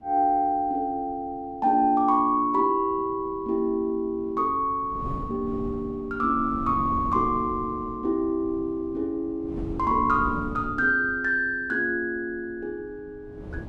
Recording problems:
wind on the microphone; below 250 Hz, SNR 15 dB

